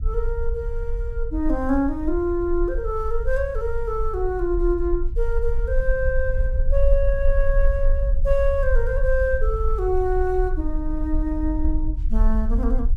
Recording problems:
rumble; below 48 Hz, strongest tone 22 Hz, SNR 1 dB

